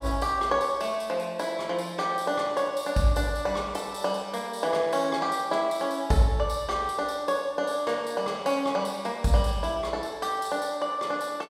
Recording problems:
none

